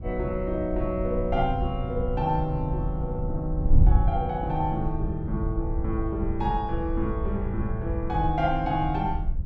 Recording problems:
wind noise; below 78 Hz, SNR 2 dB

